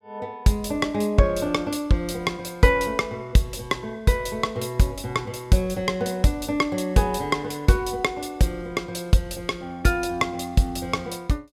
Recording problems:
none

